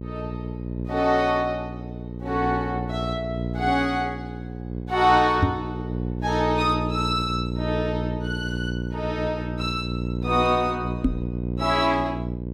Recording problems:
electrical hum; 60 Hz, harmonics up to 600 Hz, SNR 5 dB
knock on the microphone; at 5.5 s and at 11 s; peak +8 dB vs average level

